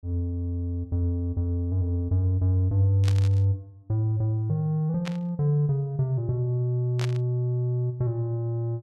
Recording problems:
static burst; at 3 s, at 5 s and at 7 s; peak -6 dB vs average level

